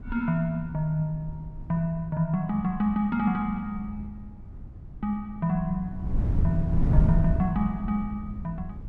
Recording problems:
wind on the microphone; below 120 Hz, SNR 3 dB

